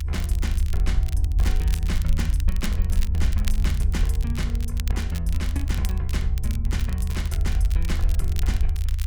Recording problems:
low-frequency rumble; below 76 Hz, SNR -7 dB
crackling; vinyl, SNR 9 dB

